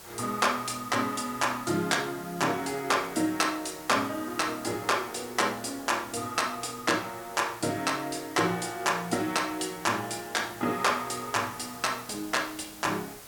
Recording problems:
hiss; slope -2 dB per octave, SNR 16 dB

